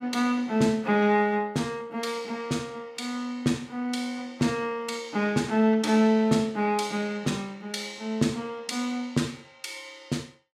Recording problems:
none

